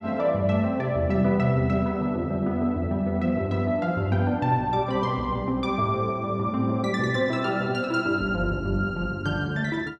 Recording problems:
none

